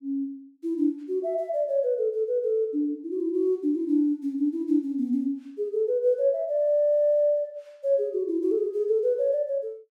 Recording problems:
none

